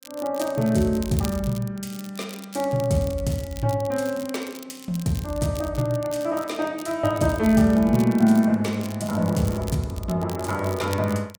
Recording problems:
crackling; vinyl, SNR 18 dB

